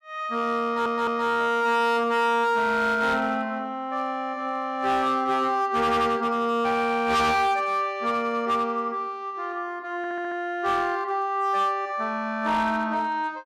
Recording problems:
distortion; hard clipping, uneven, signal-to-distortion ratio 11 dB
audio stuttering; at 0.5 s and at 10 s

